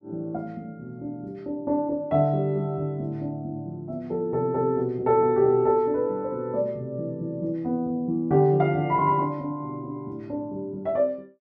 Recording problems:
none

